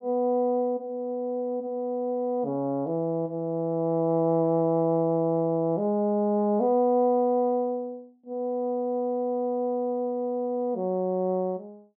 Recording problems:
low-pass filter; nothing above 5.5 kHz

